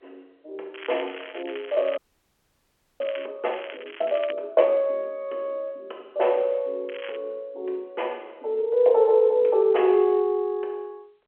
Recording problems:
phone line; 320 Hz to 3.3 kHz, G.711
crackling; from 0.5 to 3.5 s, at 3.5 s and at 7 s; loose cable, SNR 17 dB
audio freezing; at 2 s for 1 s

